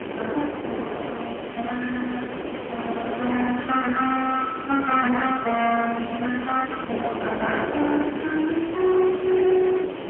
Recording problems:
phone line; 260 Hz to 3.3 kHz, AMR-NB, then MP3
distorted audio; hard clipping, signal-to-distortion ratio 11 dB
background hiss; SNR 17 dB
wind on the microphone; below 830 Hz, SNR 8 dB

